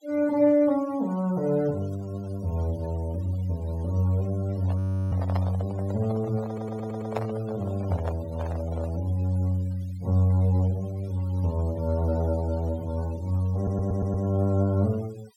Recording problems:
noise reduction artefacts; signal-to-artefact ratio 23 dB
handling noise; from 4.5 to 9 s; peak +1 dB vs average level
frozen audio; at 5 s
stutter; at 6.5 s and at 14 s

